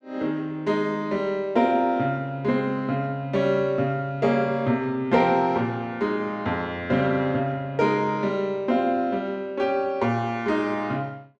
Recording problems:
none

